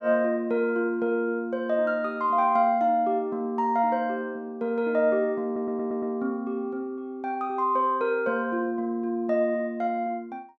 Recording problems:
stutter; at 5.5 s

